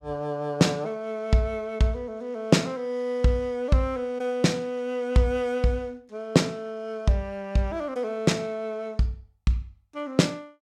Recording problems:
none

